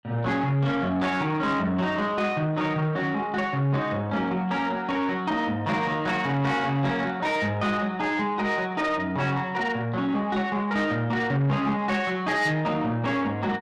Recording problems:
distortion; soft clipping, signal-to-distortion ratio 12 dB

